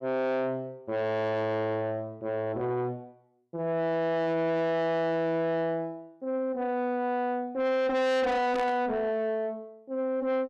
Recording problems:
distortion; soft clipping, signal-to-distortion ratio 6 dB
burst of static; at 8.5 s; peak -8 dB vs average level

